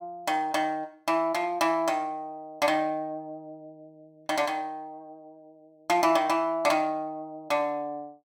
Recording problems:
none

